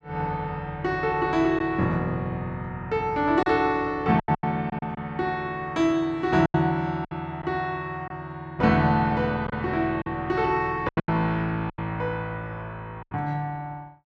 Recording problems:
packet loss; 6% of the sound replaced, filled with silence

